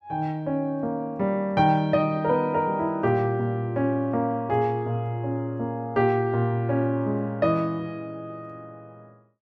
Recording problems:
none

